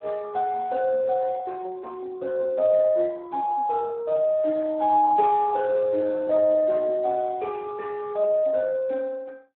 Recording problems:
telephone audio; 320 Hz to 2.1 kHz, Speex

